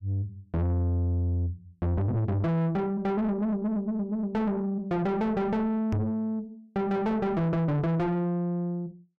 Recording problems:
distortion; soft clipping, signal-to-distortion ratio 5 dB
microphone thump; at 6 s; peak +4 dB vs average level

